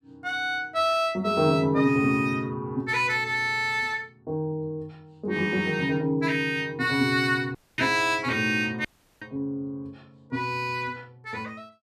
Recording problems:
audio cutting out; at 7.5 s and at 9 s

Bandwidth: 14.5 kHz